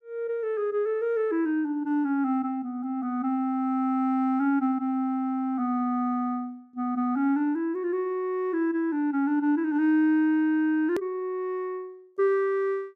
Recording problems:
hard cut with a click; at 11 s

